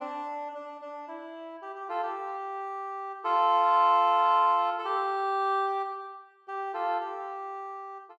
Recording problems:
none

